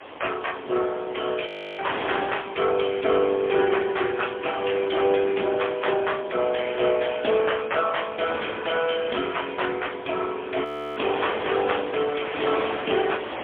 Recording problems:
telephone audio; 220 Hz to 3.4 kHz, AMR-NB, then MP3
wind noise; below 2.2 kHz, SNR 11 dB
audio freezing; at 1.5 s and at 11 s

